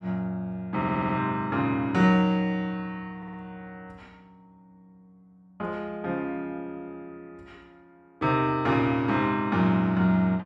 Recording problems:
stutter; at 1 s and at 3 s

